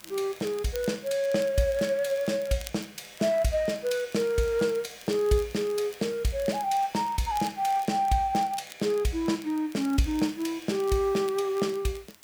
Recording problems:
background hiss; slope -2 dB per octave, SNR 25 dB
crackling; vinyl, SNR 22 dB

